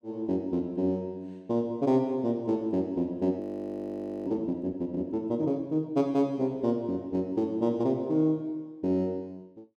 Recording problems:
audio freezing; at 3.5 s for 1 s

